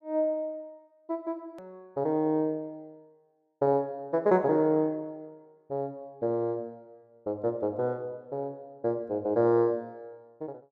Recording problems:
hard cut with a click; at 1.5 s

